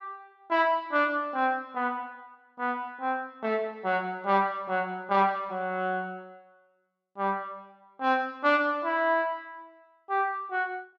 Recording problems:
none

